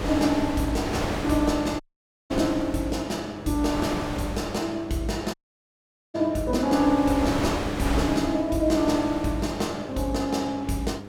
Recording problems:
electrical hum; 50 Hz, harmonics up to 900 Hz, SNR 14 dB
wind noise; below 1.3 kHz, SNR 7 dB
audio cutting out; at 2 s and at 5.5 s for 1 s

